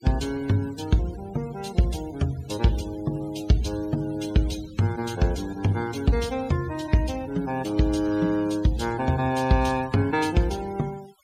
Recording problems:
noise reduction artefacts; signal-to-artefact ratio 19 dB

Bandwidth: 16 kHz